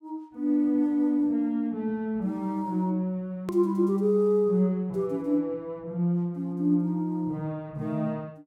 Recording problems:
edit click; at 3.5 s

